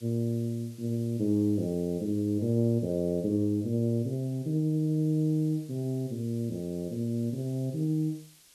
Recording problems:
background hiss; SNR 25 dB

